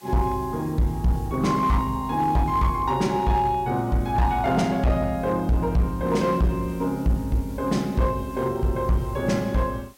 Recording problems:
distorted audio; hard clipping, uneven, signal-to-distortion ratio 11 dB
background hiss; slope 0 dB per octave, SNR 26 dB

